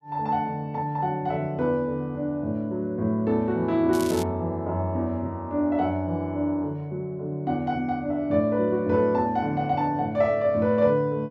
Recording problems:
crackle; at 4 s; loose cable, SNR 14 dB

